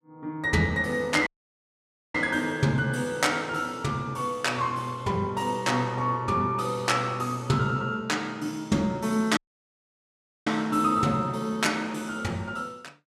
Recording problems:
dropout; at 1.5 s for 1 s and at 9.5 s for 1 s

